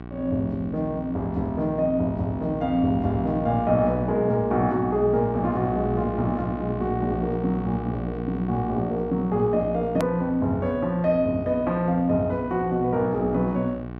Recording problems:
hum; 60 Hz, harmonics up to 1.6 kHz, SNR 10 dB
edit click; at 10 s

